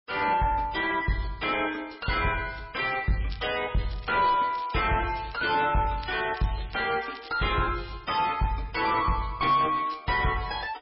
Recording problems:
codec artefacts; MP3, log-spectral distance 6 dB, nothing above 5 kHz
distortion; soft clipping, signal-to-distortion ratio 5 dB
crackling; from 3 to 7.5 s and at 9.5 s; loose cable, SNR 19 dB

